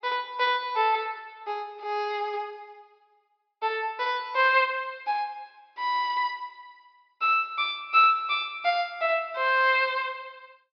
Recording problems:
treble missing; nothing above 5.5 kHz

